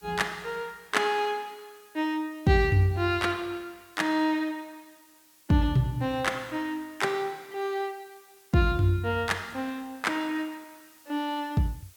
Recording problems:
background hiss; slope +1 dB per octave, SNR 27 dB

